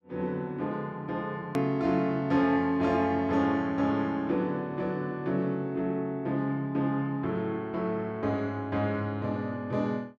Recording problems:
hard cut with a click; at 1.5 s

